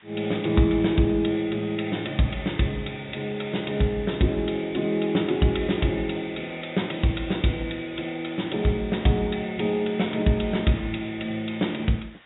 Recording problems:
treble missing; nothing above 3.8 kHz
hiss; SNR 25 dB

